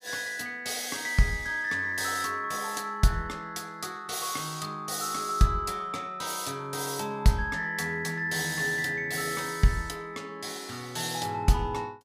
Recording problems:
none

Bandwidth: 15 kHz